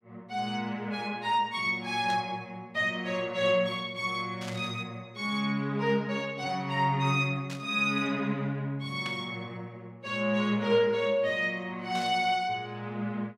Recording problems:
static burst; 5 times, first at 2 s; peak -7 dB vs average level

